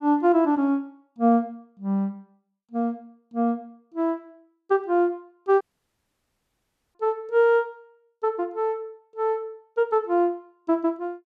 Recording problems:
dropout; at 5.5 s for 1.5 s

